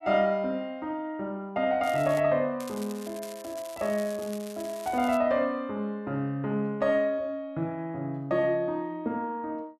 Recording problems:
crackling; at 2 s and from 2.5 to 5 s; loose cable, SNR 17 dB

